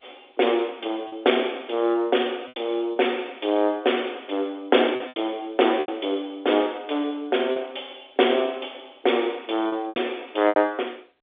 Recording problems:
phone line; 260 Hz to 3.6 kHz, G.711
packet loss; 6% of the sound replaced, filled with repeated pitch periods

